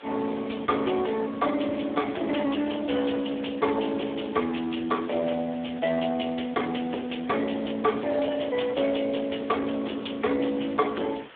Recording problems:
phone line; 240 Hz to 3.4 kHz, Speex
distorted audio; soft clipping, signal-to-distortion ratio 13 dB
background hiss; SNR 19 dB

